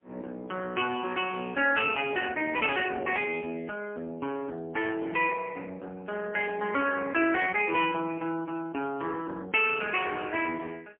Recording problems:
telephone audio; 240 Hz to 3.3 kHz, AMR-NB, then MP3

